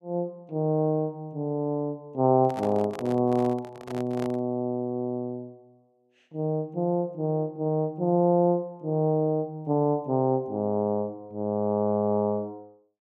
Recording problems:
handling noise; from 2.5 to 4.5 s; peak -7 dB vs average level

